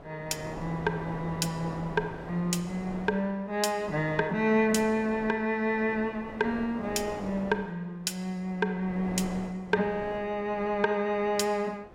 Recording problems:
wind noise; below 760 Hz, SNR 14 dB

